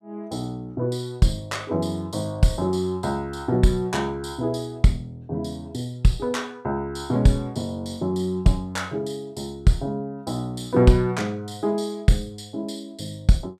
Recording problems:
none

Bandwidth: 14.5 kHz